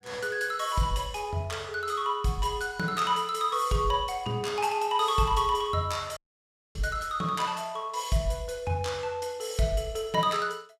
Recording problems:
audio cutting out; at 6 s for 0.5 s

